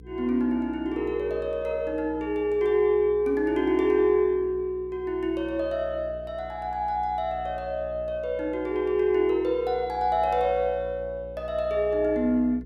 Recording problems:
hum; 60 Hz, harmonics up to 480 Hz, SNR 19 dB

